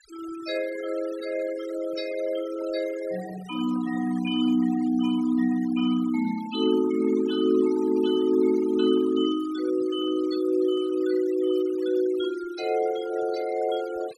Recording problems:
noise reduction artefacts; signal-to-artefact ratio 18 dB

